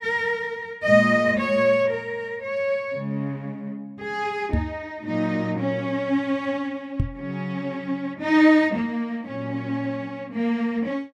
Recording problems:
microphone thump; at 4.5 s and at 7 s; peak +5 dB vs average level

